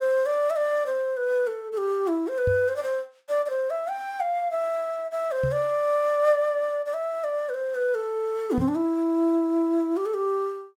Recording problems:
microphone bump; at 2.5 s, at 5.5 s and at 8.5 s; peak 0 dB vs average level

